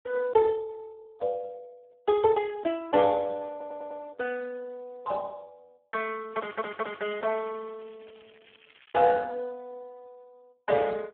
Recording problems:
telephone audio; 260 Hz to 2.9 kHz, Speex
stutter; at 3.5 s and at 6.5 s
crackling; from 6.5 to 9 s; loose cable, SNR 27 dB

